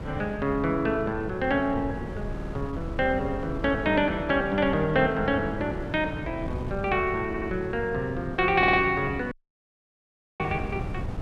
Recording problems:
wind noise; below 210 Hz, SNR 10 dB
stutter; at 2.5 s, at 7.5 s and at 8.5 s
dropout; at 9.5 s for 1 s

